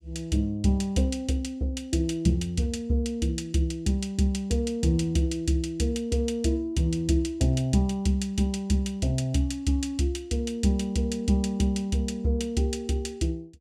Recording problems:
none

